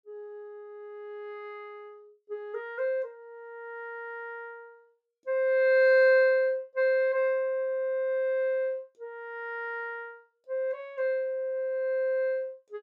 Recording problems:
none

